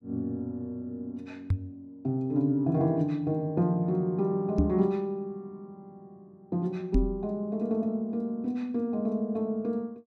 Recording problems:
microphone bump; at 1.5 s, at 4.5 s and at 7 s; peak +7 dB vs average level

